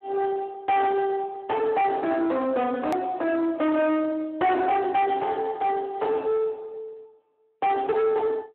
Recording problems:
telephone audio; 320 Hz to 3.1 kHz, Speex
distorted audio; soft clipping, signal-to-distortion ratio 7 dB
hard cut with a click; at 3 s

